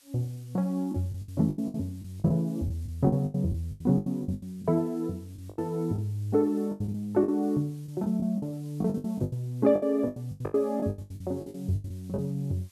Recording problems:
background hiss; slope +1 dB per octave, SNR 28 dB
lost packets; 17% of the sound replaced, filled with the last packet

